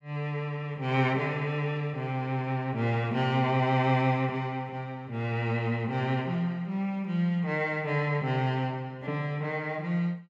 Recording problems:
none

